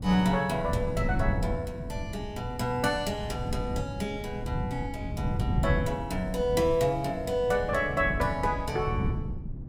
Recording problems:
wind noise; below 170 Hz, SNR 4 dB

